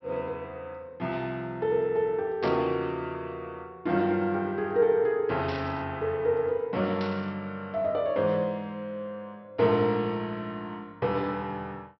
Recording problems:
treble missing; nothing above 5.7 kHz
static burst; at 2.5 s, at 5.5 s and at 7 s; peak -8 dB vs average level

